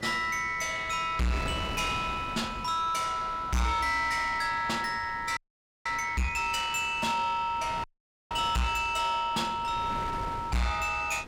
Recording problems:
distorted audio; soft clipping, signal-to-distortion ratio 6 dB
wind noise; below 1 kHz, SNR 13 dB
frozen audio; at 5.5 s and at 8 s

